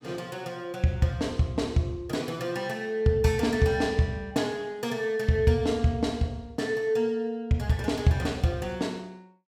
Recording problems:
none

